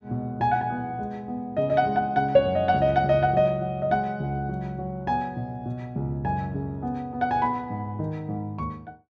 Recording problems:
none

